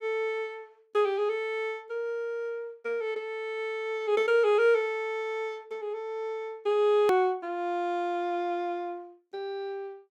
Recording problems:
click at an edit; at 7 s

